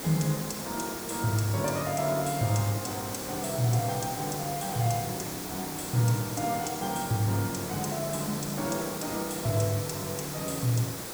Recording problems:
background hiss; SNR 6 dB

